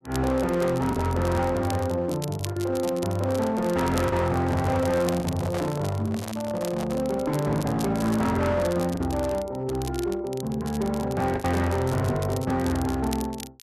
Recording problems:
distortion; hard clipping, uneven, signal-to-distortion ratio 9 dB
crackling; vinyl, SNR 16 dB
lost packets; 3% of the sound replaced, filled with the last packet
microphone handling noise; from 4 to 7 s; peak -4 dB vs average level

